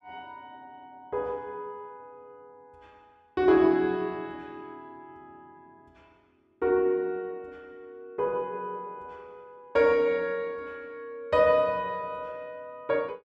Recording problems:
none

